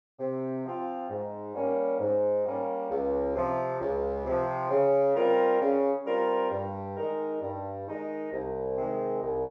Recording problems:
none

